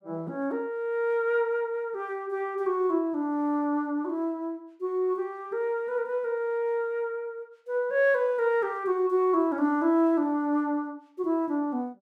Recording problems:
none

